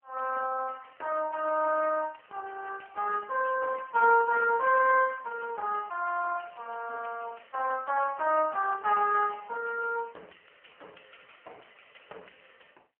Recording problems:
phone line; 370 Hz to 2 kHz, AMR-NB

